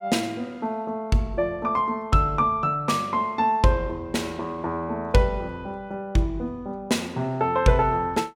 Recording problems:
none

